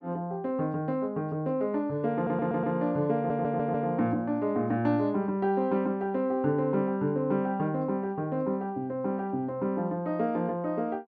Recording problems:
audio stuttering; at 2 s and at 3 s

